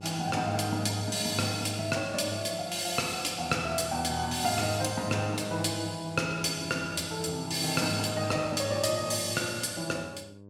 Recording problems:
electrical hum; 50 Hz, harmonics up to 1 kHz, SNR 21 dB

